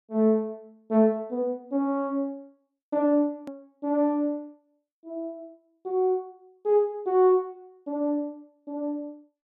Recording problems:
hard cut with a click; at 3.5 s

